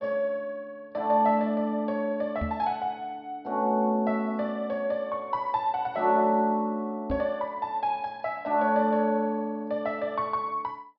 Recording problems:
treble missing; nothing above 5.5 kHz
microphone bump; at 2.5 s and at 7 s; peak -1 dB vs average level

